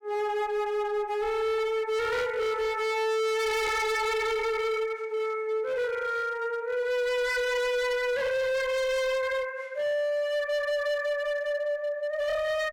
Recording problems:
distorted audio; hard clipping, signal-to-distortion ratio 7 dB

